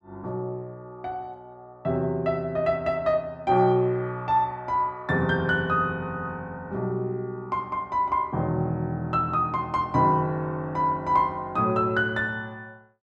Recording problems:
none

